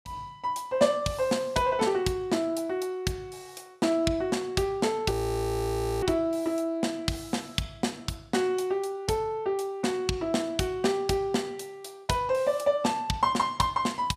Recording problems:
frozen audio; at 5 s for 1 s

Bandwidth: 15 kHz